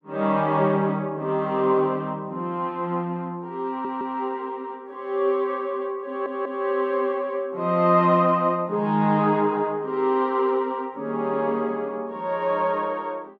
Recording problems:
stutter; at 3.5 s and at 6 s

